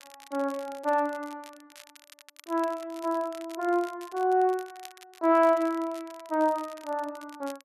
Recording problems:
crackle; vinyl, SNR 22 dB

